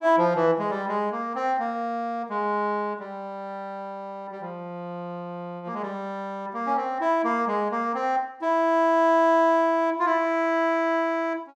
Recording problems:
none

